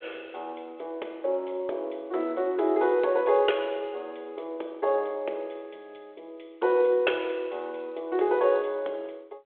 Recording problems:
telephone audio; 320 Hz to 3.4 kHz, G.726

